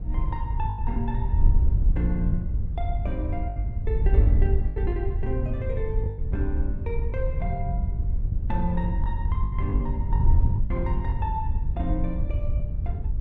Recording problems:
wind on the microphone; below 80 Hz, SNR -7 dB
lost packets; 6% of the sound replaced, filled with the last packet

